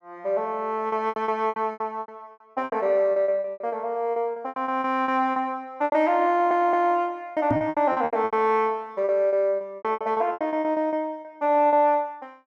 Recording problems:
packet loss; 19% of the sound replaced, filled with repeated pitch periods
stutter; at 6.5 s
knock on the microphone; at 7.5 s; peak +2 dB vs average level

